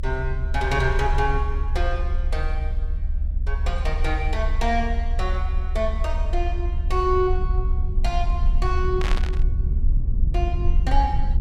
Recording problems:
low-frequency rumble; below 66 Hz, strongest tone 26 Hz, SNR -2 dB
burst of static; at 9 s; peak 0 dB vs average level

